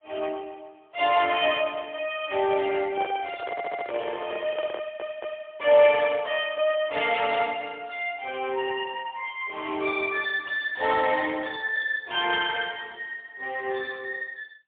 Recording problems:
phone line; 280 Hz to 3.4 kHz, AMR-NB, then MP3
handling noise; from 3 to 5.5 s; peak -5 dB vs average level
audio stuttering; at 3.5 s and at 5 s

